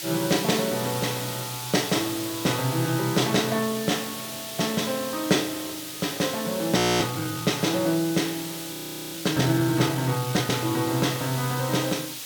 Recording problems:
background hiss; SNR 8 dB
audio freezing; at 7 s and at 8.5 s

